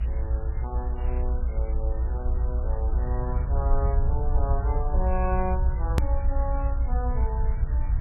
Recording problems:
lossy codec; AAC, then MP3, log-spectral distance 4 dB
hiss; SNR 14 dB
rumble; below 62 Hz, SNR -8 dB
edit click; at 6 s

